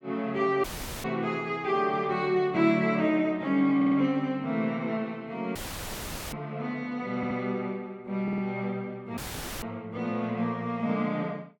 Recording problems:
audio cutting out; at 0.5 s, at 5.5 s for 1 s and at 9 s; filled with static
stutter; at 4 s, at 7 s and at 8 s

